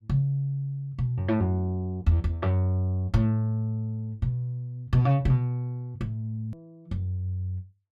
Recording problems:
edit click; at 6.5 s

